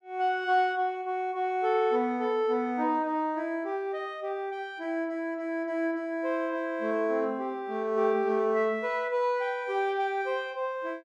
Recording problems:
none

